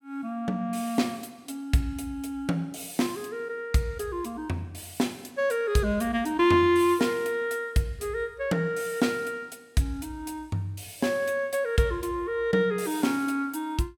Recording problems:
none

